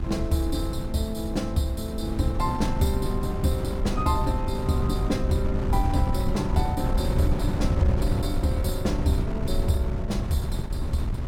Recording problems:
wind on the microphone; below 130 Hz, SNR 1 dB

